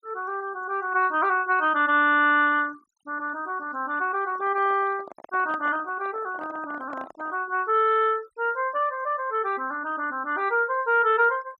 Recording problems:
noise reduction artefacts; signal-to-artefact ratio 26 dB
handling noise; from 4 to 7.5 s; peak -10 dB vs average level

